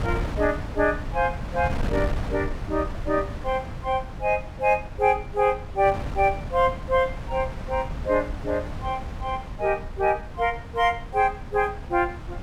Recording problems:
wind on the microphone; below 200 Hz, SNR 9 dB

